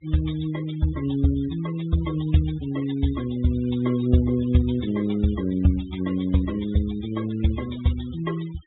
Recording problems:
treble cut off; nothing above 3.7 kHz
denoising artefacts; signal-to-artefact ratio 20 dB

